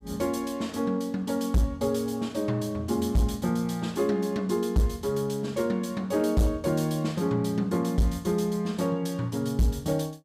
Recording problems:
distortion; hard clipping, signal-to-distortion ratio 12 dB

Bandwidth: 15.5 kHz